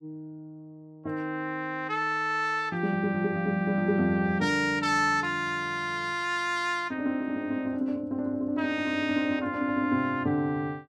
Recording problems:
none

